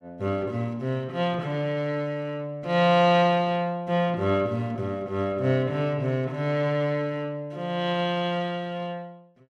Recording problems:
none

